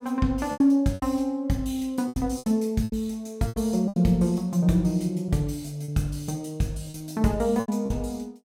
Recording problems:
lost packets; 10% of the sound replaced, filled with repeated pitch periods

